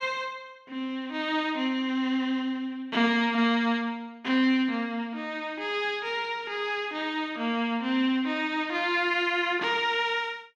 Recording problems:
none

